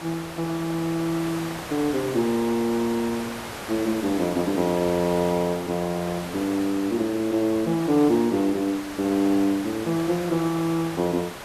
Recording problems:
hiss; SNR 11 dB

